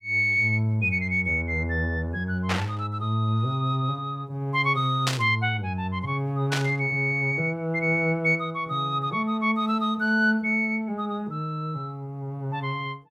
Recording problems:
burst of static; at 2.5 s, at 5 s and at 6.5 s; peak +4 dB vs average level

